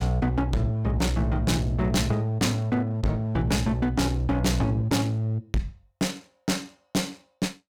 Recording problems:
distortion; hard clipping, uneven, signal-to-distortion ratio 6 dB

